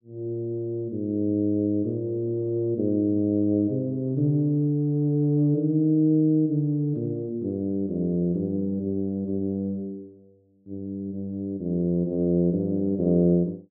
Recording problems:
none

